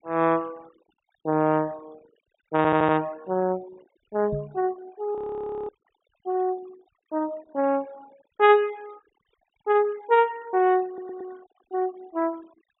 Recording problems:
treble missing; nothing above 4 kHz
noise reduction artefacts; signal-to-artefact ratio 27 dB
audio stuttering; at 2.5 s and at 11 s
microphone bump; at 4.5 s; peak -4 dB vs average level
frozen audio; at 5 s for 0.5 s

